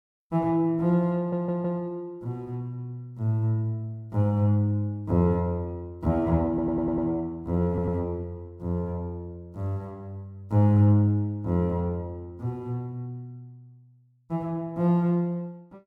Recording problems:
audio stuttering; at 1 s, at 6.5 s and at 7.5 s

